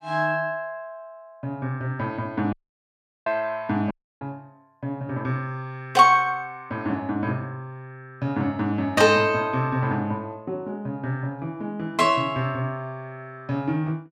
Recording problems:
dropout; at 2.5 s for 0.5 s and at 4 s

